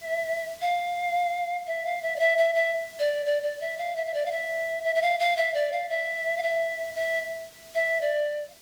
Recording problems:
background hiss; slope 0 dB per octave, SNR 22 dB

